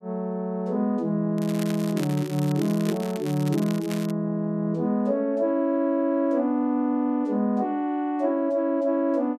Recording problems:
crackling; from 1.5 to 4 s; loose cable, SNR 16 dB

